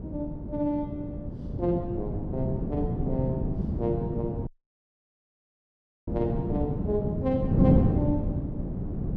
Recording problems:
wind noise; below 240 Hz, SNR -2 dB
dropout; at 4.5 s for 1.5 s

